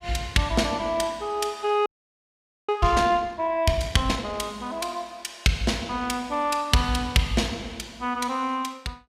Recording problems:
frozen audio; at 2 s for 1 s

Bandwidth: 15.5 kHz